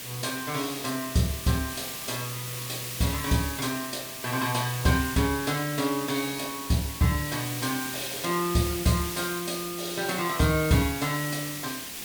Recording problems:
background hiss; SNR 6 dB

